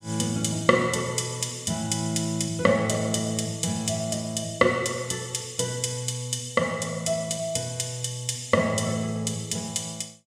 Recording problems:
none

